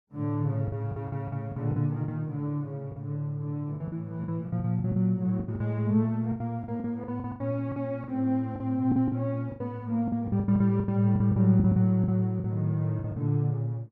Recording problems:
packet loss; 14% of the sound replaced, filled with the last packet

